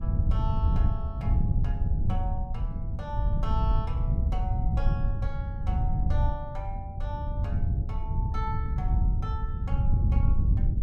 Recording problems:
wind on the microphone; below 100 Hz, SNR -11 dB

